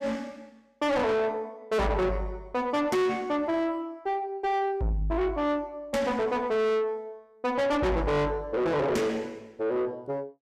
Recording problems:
distortion; soft clipping, signal-to-distortion ratio 6 dB

